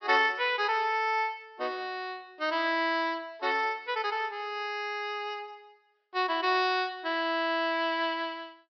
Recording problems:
treble cut off; nothing above 5.5 kHz

